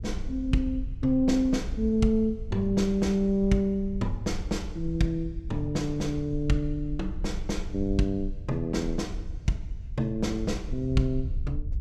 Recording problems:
rumble; below 66 Hz, SNR 9 dB

